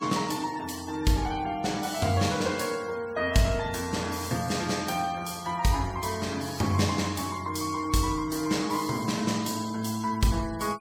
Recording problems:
noise reduction artefacts; signal-to-artefact ratio 17 dB

